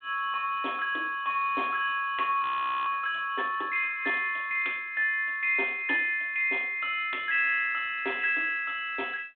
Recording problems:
phone line; 260 Hz to 3.6 kHz, G.726
frozen audio; at 2.5 s

